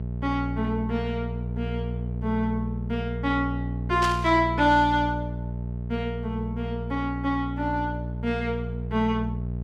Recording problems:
hum; 60 Hz, harmonics up to 660 Hz, SNR 5 dB
static burst; at 4 s; peak 0 dB vs average level

